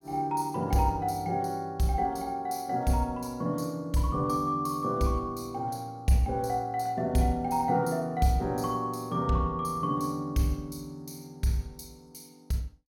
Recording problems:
none

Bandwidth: 17.5 kHz